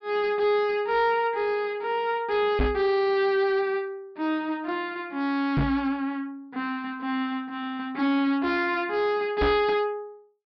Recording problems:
low-pass filter; nothing above 5.5 kHz
distorted audio; hard clipping, signal-to-distortion ratio 10 dB
microphone bump; at 2.5 s, at 5.5 s and at 9.5 s; peak +4 dB vs average level

